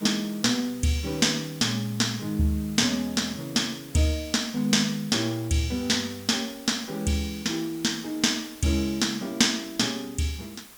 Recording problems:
hiss; slope -1 dB per octave, SNR 20 dB

